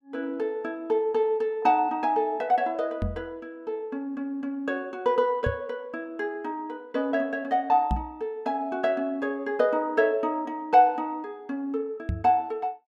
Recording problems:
knock on the microphone; 4 times, first at 3 s; peak +2 dB vs average level

